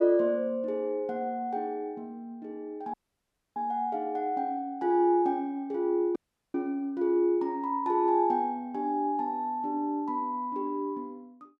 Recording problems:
audio cutting out; at 3 s for 0.5 s and at 6 s

